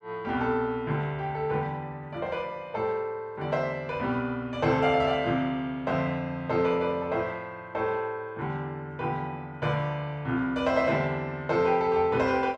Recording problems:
none

